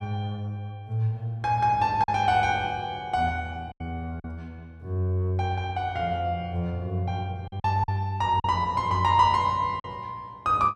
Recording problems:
packet loss; 3% of the sound replaced, filled with silence

